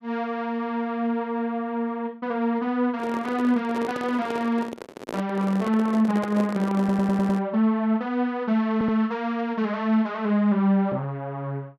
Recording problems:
microphone handling noise; from 3 to 7.5 s; peak -5 dB vs average level
audio stuttering; at 7 s and at 8.5 s

